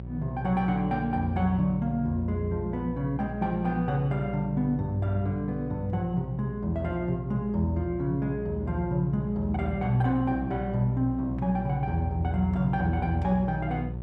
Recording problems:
electrical hum; 60 Hz, harmonics up to 600 Hz, SNR 9 dB

